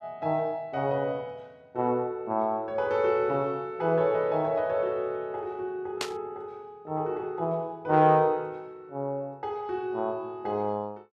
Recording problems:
static burst; at 6 s; peak +2 dB vs average level

